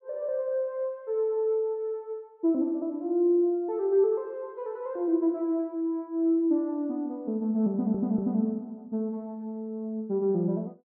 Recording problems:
stutter; at 7.5 s

